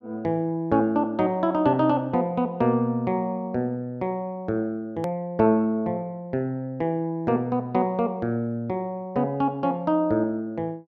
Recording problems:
edit click; at 5 s

